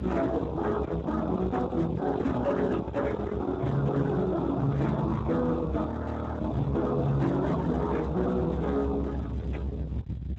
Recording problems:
codec artefacts; MP3, then Speex, log-spectral distance 4 dB, nothing above 7.8 kHz
distortion; soft clipping, signal-to-distortion ratio 6 dB
low-frequency rumble; below 610 Hz, SNR 5 dB
static burst; at 3 s, at 8 s and at 9.5 s; peak -12 dB vs average level
frozen audio; at 6 s for 0.5 s

